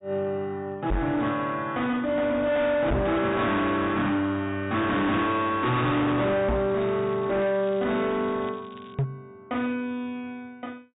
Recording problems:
treble missing; nothing above 4 kHz
distorted audio; hard clipping, uneven, signal-to-distortion ratio 7 dB
microphone thump; 4 times, first at 1 s; peak +3 dB vs average level
crackle; from 5.5 to 9 s; loose cable, SNR 27 dB

